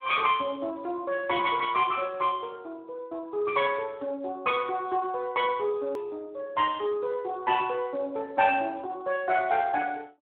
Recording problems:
phone line; 300 Hz to 3.5 kHz, Speex
hard cut with a click; at 6 s

